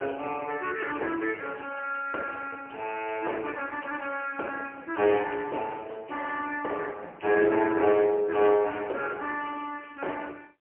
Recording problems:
telephone audio; 300 Hz to 3 kHz, AMR-NB, then MP3

